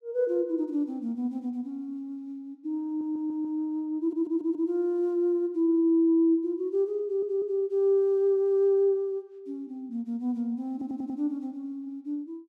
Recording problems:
stutter; 4 times, first at 3 s

